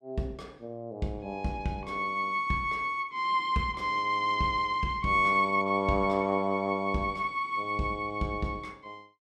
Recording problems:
none

